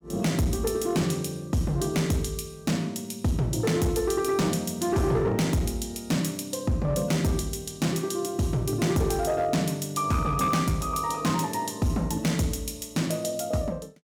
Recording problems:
distortion; hard clipping, signal-to-distortion ratio 12 dB

